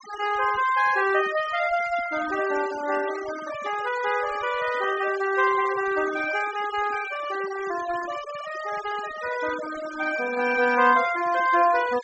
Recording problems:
treble cut off; nothing above 8 kHz
noise reduction artefacts; signal-to-artefact ratio 14 dB

